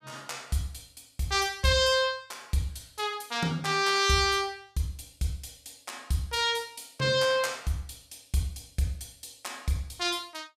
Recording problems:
none

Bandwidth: 15.5 kHz